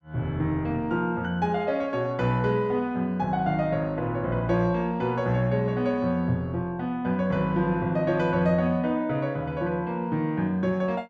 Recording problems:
none

